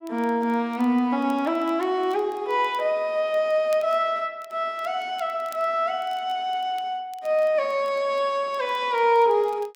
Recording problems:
crackling; vinyl, SNR 30 dB

